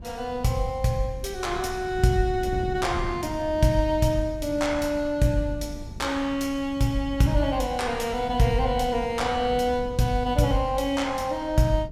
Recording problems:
wind noise; below 160 Hz, SNR 14 dB

